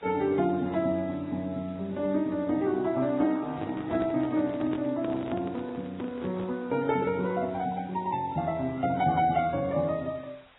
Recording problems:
codec artefacts; AAC, then Vorbis, log-spectral distance 4 dB, nothing above 3.2 kHz
hiss; SNR 27 dB
handling noise; from 3.5 to 6.5 s; peak -3 dB vs average level

